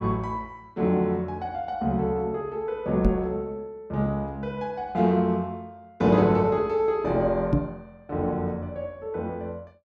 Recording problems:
microphone thump; at 3 s and at 7.5 s; peak +7 dB vs average level

